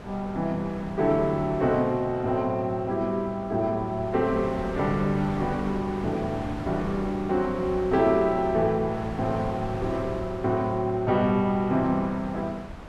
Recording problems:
wind noise; below 850 Hz, SNR 12 dB

